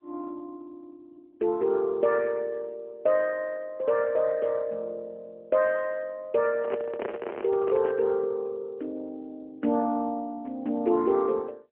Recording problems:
telephone audio; 260 Hz to 3.1 kHz, AMR-NB
handling noise; from 6.5 to 8 s; peak -1 dB vs average level

